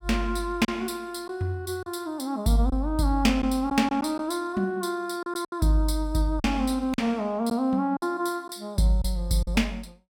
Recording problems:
lost packets; 5% of the sound replaced, filled with silence

